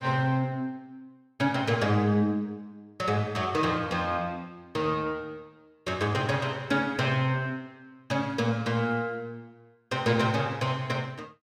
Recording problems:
none

